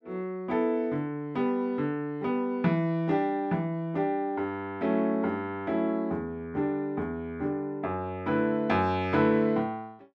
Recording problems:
none

